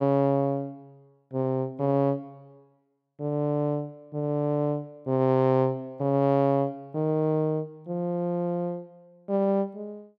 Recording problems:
none

